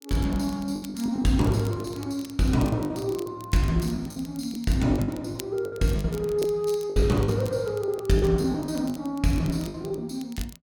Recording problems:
crackling; vinyl, SNR 21 dB
packet loss; 12% of the sound replaced, filled with the last packet

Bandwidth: 17.5 kHz